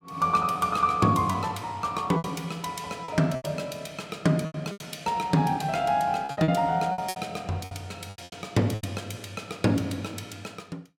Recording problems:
packet loss; 9% of the sound replaced, filled with repeated pitch periods

